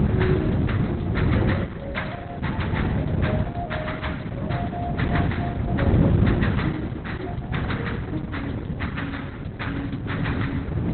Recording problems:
lossy codec; Opus, log-spectral distance 5 dB, nothing above 4.1 kHz
wind noise; below 270 Hz, SNR -6 dB

